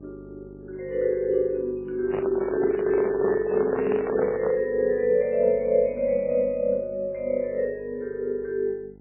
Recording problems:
lossy compression; MP3, then MP3, log-spectral distance 2 dB, nothing above 2.5 kHz
hum; 50 Hz, harmonics up to 900 Hz, SNR 22 dB
microphone handling noise; from 2 to 4.5 s; peak -1 dB vs average level

